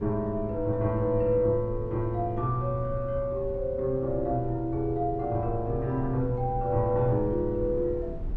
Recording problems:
low-frequency rumble; below 120 Hz, SNR 12 dB

